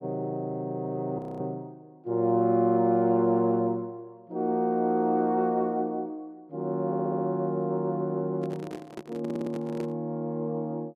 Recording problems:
frozen audio; at 1 s
audio stuttering; at 7 s and at 9 s
microphone handling noise; from 8.5 to 10 s; peak -7 dB vs average level

